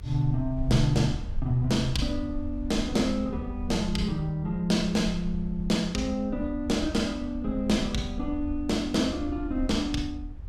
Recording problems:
low-frequency rumble; below 74 Hz, SNR 10 dB

